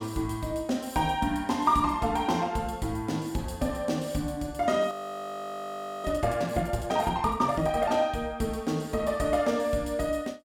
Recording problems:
frozen audio; at 5 s for 1 s

